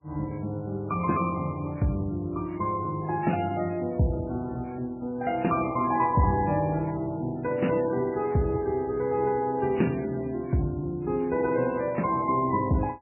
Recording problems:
codec artefacts; MP3, log-spectral distance 3 dB, nothing above 2.4 kHz

